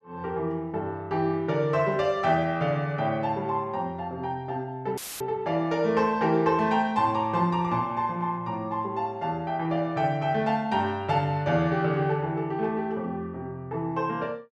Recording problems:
dropout; at 5 s; filled with static

